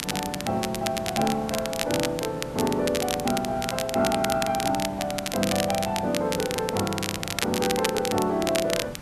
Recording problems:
background hiss; slope -5 dB per octave, SNR 13 dB
crackling; vinyl, SNR 5 dB

